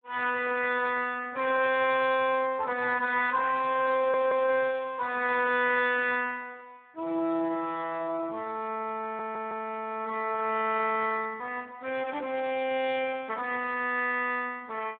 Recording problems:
phone line; 220 Hz to 3.4 kHz, Speex
audio stuttering; at 4 s and at 9 s

